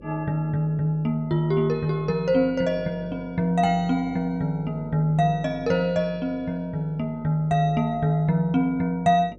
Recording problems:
hum; 50 Hz, harmonics up to 600 Hz, SNR 21 dB

